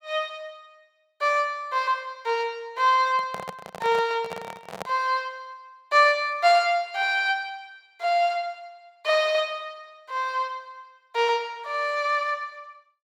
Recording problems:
microphone handling noise; from 3 to 5 s; peak -5 dB vs average level

